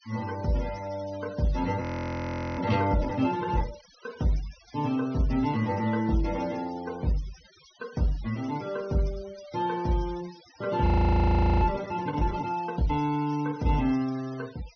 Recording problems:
low-pass filter; nothing above 6.2 kHz
denoising artefacts; signal-to-artefact ratio 20 dB
frozen audio; at 2 s for 1 s and at 11 s for 1 s

